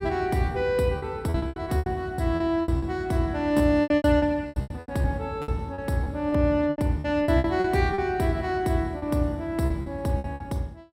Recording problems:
lost packets; 15% of the sound replaced, filled with repeated pitch periods

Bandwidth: 16 kHz